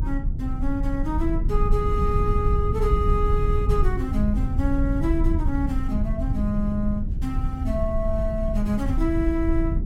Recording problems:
low-frequency rumble; below 84 Hz, SNR -1 dB

